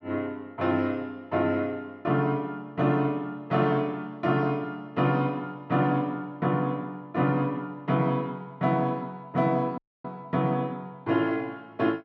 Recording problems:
audio cutting out; at 10 s

